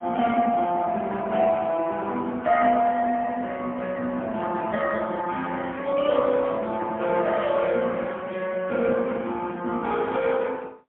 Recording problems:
phone line; 190 Hz to 3.4 kHz, AMR-NB, then MP3

